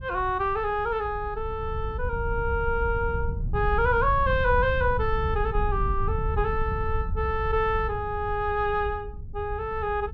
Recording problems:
wind noise; below 86 Hz, SNR 6 dB

